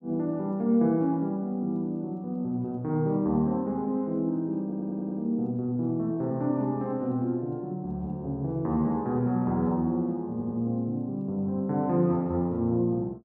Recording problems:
stutter; at 4.5 s and at 10 s

